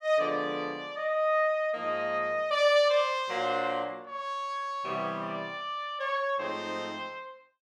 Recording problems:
none

